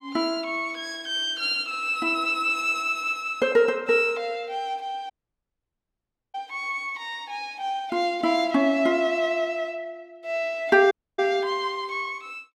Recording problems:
dropout; at 5 s for 1 s and at 11 s

